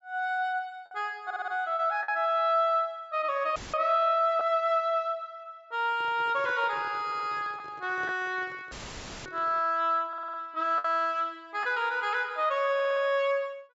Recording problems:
treble missing; nothing above 8 kHz
packet loss; 1.5% of the sound replaced, filled with the last packet
stutter; 4 times, first at 1.5 s
dropout; at 3.5 s and at 8.5 s for 0.5 s; filled with static
microphone handling noise; from 6 to 9.5 s; peak -12 dB vs average level

